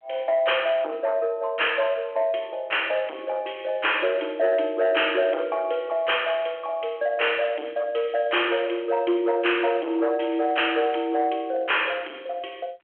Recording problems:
telephone audio; 260 Hz to 3.3 kHz, G.726
distorted audio; soft clipping, signal-to-distortion ratio 9 dB

